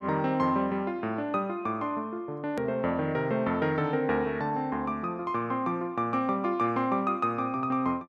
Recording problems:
click at an edit; at 2.5 s

